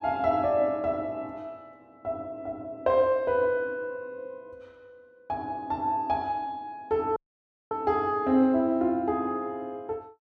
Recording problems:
audio cutting out; at 7 s for 0.5 s

